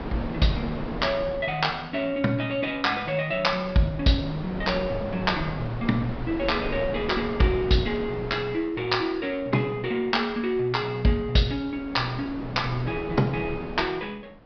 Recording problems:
treble missing; nothing above 5.5 kHz
wind noise; below 640 Hz, SNR 10 dB

